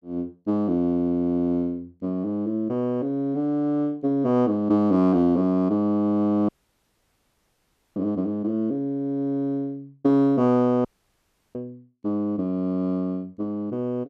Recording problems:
dropout; at 6.5 s for 1.5 s and at 11 s for 0.5 s

